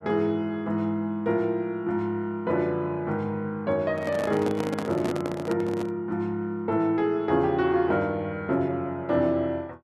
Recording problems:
microphone handling noise; from 4 to 6 s; peak -1 dB vs average level

